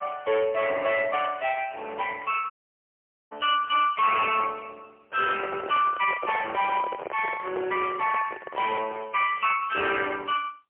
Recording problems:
telephone audio; 300 Hz to 3 kHz, AMR-NB, then MP3
distorted audio; hard clipping, uneven, signal-to-distortion ratio 11 dB
crackling; at 2 s, from 5.5 to 8.5 s and at 9 s; loose cable, SNR 29 dB
audio cutting out; at 2.5 s for 1 s
microphone handling noise; from 5 to 9 s; peak -3 dB vs average level

